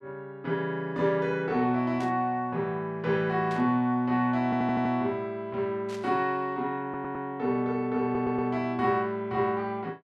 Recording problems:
burst of static; at 2 s, at 3.5 s and at 6 s; peak -12 dB vs average level
audio stuttering; at 4.5 s, at 7 s and at 8 s

